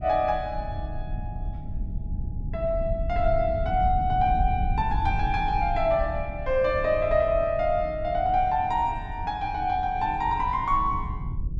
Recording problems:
low-frequency rumble; below 92 Hz, SNR 8 dB

